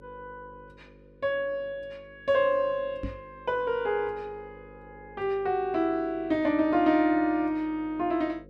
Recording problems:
hum; 50 Hz, harmonics up to 550 Hz, SNR 24 dB
microphone thump; at 3 s; peak -3 dB vs average level

